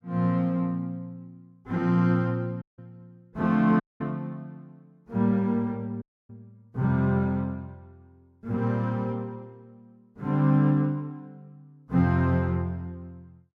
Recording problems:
dropout; at 2.5 s, at 4 s and at 6 s

